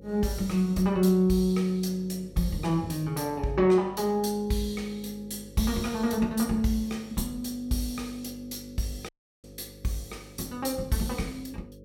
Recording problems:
hum; 50 Hz, harmonics up to 550 Hz, SNR 20 dB
dropout; at 9 s

